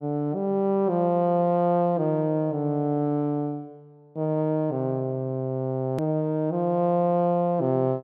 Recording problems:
hard cut with a click; at 6 s

